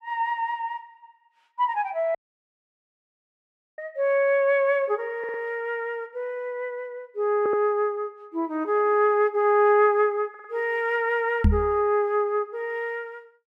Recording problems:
audio cutting out; at 2 s for 1.5 s
stutter; at 5 s, at 7.5 s and at 10 s
microphone bump; at 11 s; peak +7 dB vs average level

